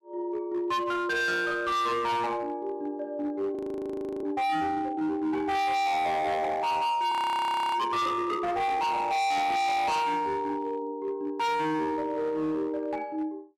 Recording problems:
distortion; hard clipping, signal-to-distortion ratio 6 dB
audio freezing; at 3.5 s for 0.5 s and at 7 s for 0.5 s

